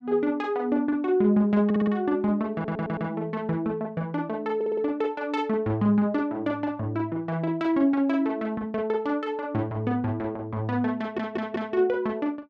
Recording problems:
stutter; 4 times, first at 1.5 s

